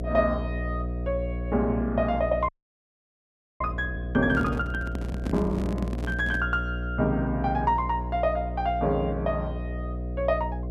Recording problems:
hum; 60 Hz, harmonics up to 720 Hz, SNR 5 dB
frozen audio; at 2.5 s for 1 s
handling noise; from 4.5 to 6.5 s; peak -2 dB vs average level

